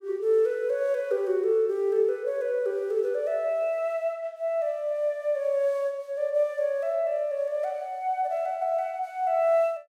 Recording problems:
none

